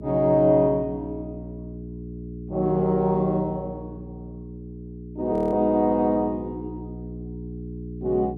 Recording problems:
hum; 60 Hz, harmonics up to 420 Hz, SNR 14 dB
frozen audio; at 5.5 s

